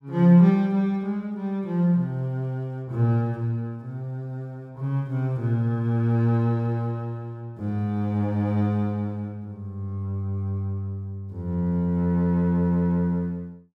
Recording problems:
none

